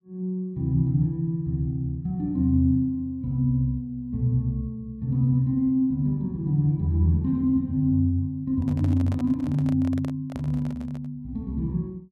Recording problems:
microphone handling noise; from 8.5 to 11 s; peak -11 dB vs average level

